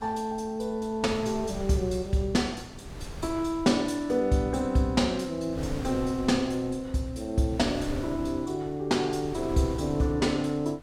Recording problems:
wind noise; below 290 Hz, SNR 14 dB

